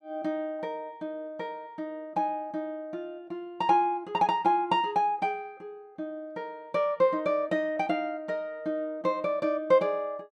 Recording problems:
none

